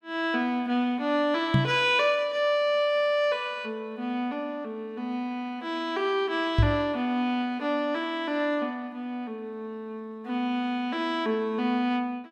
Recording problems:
microphone thump; at 1.5 s and at 6.5 s; peak +8 dB vs average level

